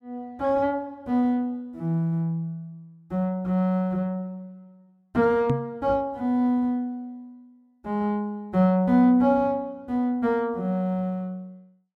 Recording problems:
microphone bump; at 5.5 s; peak +2 dB vs average level

